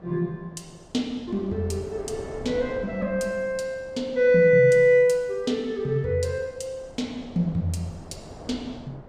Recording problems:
wind noise; below 660 Hz, SNR 20 dB

